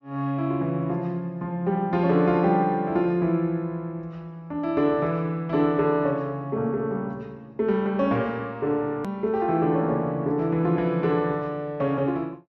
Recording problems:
treble missing; nothing above 7.1 kHz
hard cut with a click; at 9 s

